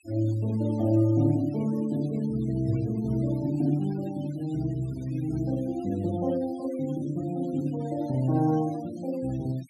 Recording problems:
noise reduction artefacts; signal-to-artefact ratio 22 dB

